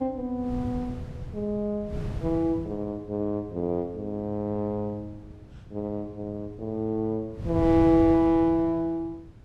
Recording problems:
wind noise; below 160 Hz, SNR 11 dB

